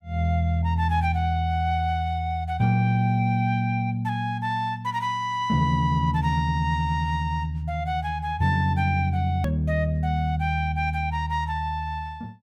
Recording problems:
hard cut with a click; at 9.5 s

